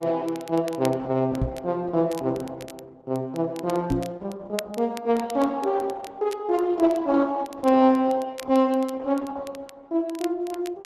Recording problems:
codec artefacts; Opus, log-spectral distance 2 dB
crackle; vinyl, SNR 20 dB
microphone bump; at 1.5 s and at 4 s; peak +3 dB vs average level

